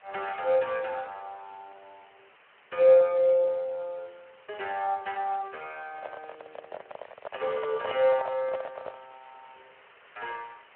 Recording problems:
telephone audio; 370 Hz to 3.4 kHz, Speex
hiss; SNR 28 dB
handling noise; from 6 to 9 s; peak -4 dB vs average level

